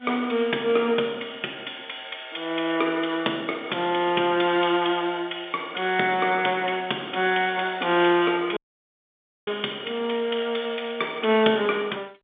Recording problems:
phone line; 240 Hz to 3.6 kHz, G.711
audio cutting out; at 8.5 s for 1 s

